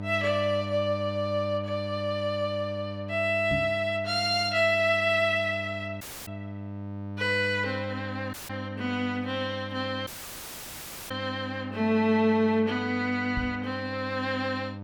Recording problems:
hum; 50 Hz, harmonics up to 1.2 kHz, SNR 11 dB
microphone thump; at 3.5 s and at 13 s; peak -1 dB vs average level
audio cutting out; at 6 s, at 8.5 s and at 10 s for 1 s

